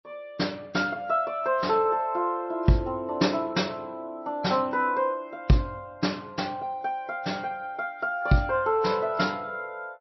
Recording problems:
lossy codec; MP3, log-spectral distance 2 dB, nothing above 5.7 kHz

